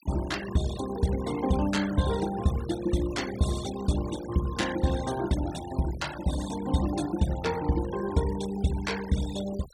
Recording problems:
denoising artefacts; signal-to-artefact ratio 13 dB

